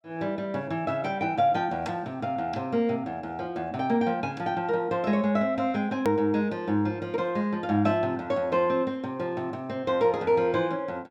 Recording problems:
edit click; at 6 s

